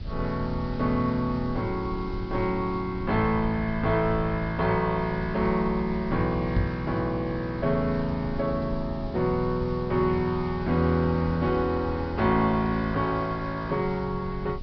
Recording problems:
treble cut off; nothing above 5.5 kHz
hiss; SNR 25 dB
rumble; below 100 Hz, SNR 14 dB
knock on the microphone; at 6.5 s; peak +5 dB vs average level

